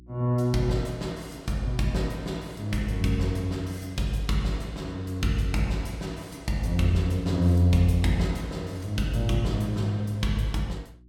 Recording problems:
hum; 60 Hz, harmonics up to 360 Hz, SNR 25 dB

